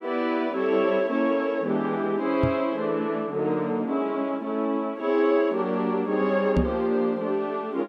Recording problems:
microphone thump; at 2.5 s and at 6.5 s; peak +6 dB vs average level

